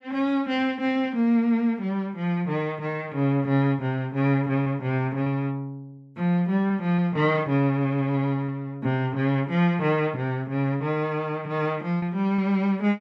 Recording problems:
lost packets; 1.9% of the sound replaced, filled with repeated pitch periods

